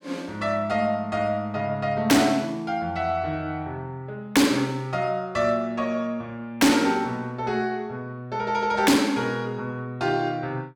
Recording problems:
distortion; hard clipping, signal-to-distortion ratio 10 dB

